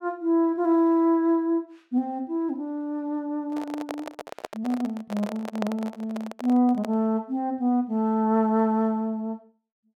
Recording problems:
handling noise; from 3.5 to 7 s; peak -1 dB vs average level

